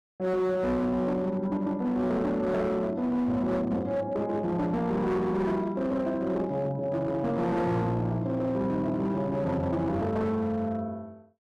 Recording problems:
distortion; hard clipping, signal-to-distortion ratio 11 dB

